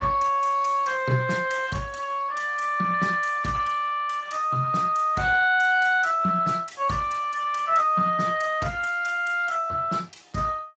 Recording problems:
lossy compression; Speex, log-spectral distance 4 dB, nothing above 7.6 kHz

